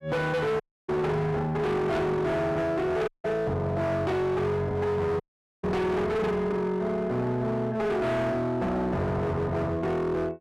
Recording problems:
distortion; hard clipping, signal-to-distortion ratio 7 dB
audio cutting out; at 0.5 s, at 3 s and at 5 s

